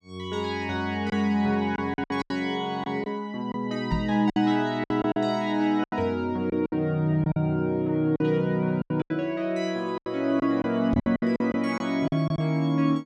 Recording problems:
packet loss; 10% of the sound replaced, filled with silence
knock on the microphone; at 4 s and at 11 s; peak +2 dB vs average level

